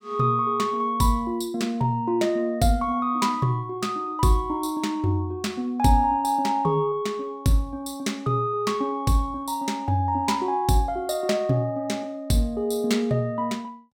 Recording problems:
none

